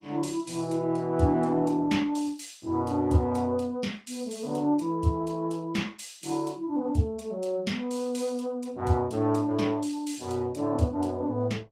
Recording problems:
codec artefacts; Opus, log-spectral distance 3 dB

